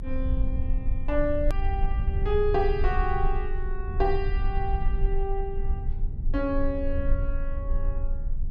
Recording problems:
low-frequency rumble; below 54 Hz, strongest tone 22 Hz, SNR -1 dB
click at an edit; at 1.5 s

